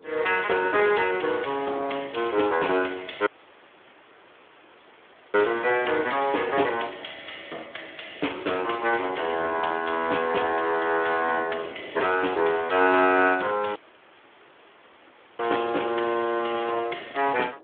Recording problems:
telephone audio; 260 Hz to 3.5 kHz, Speex
wind noise; below 610 Hz, SNR 23 dB
dropout; at 3.5 s for 2 s and at 14 s for 1.5 s

